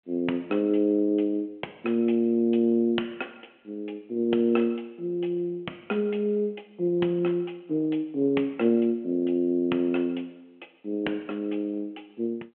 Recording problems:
phone line; 220 Hz to 3.9 kHz, G.726

